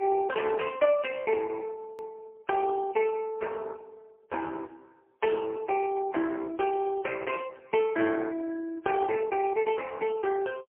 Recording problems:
phone line; 280 Hz to 3.1 kHz, AMR-NB, then MP3
hard cut with a click; at 2 s

